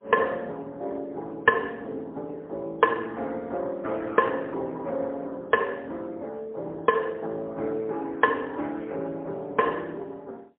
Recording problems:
phone line; 260 Hz to 2.6 kHz, AMR-NB, then MP3

